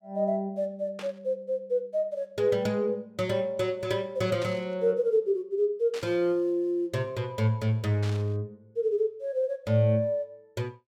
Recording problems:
burst of static; 4 times, first at 1 s; peak -9 dB vs average level

